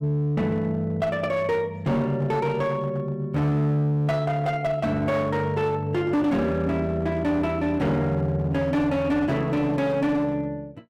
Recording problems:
distorted audio; hard clipping, uneven, signal-to-distortion ratio 11 dB

